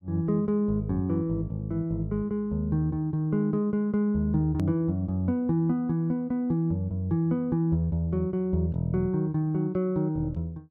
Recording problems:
hard cut with a click; at 4.5 s

